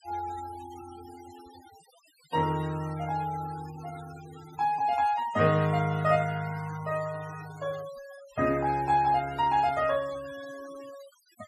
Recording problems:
denoising artefacts; signal-to-artefact ratio 20 dB

